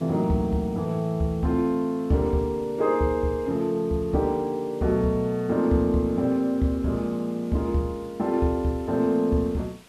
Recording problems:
background hiss; slope -2 dB per octave, SNR 27 dB

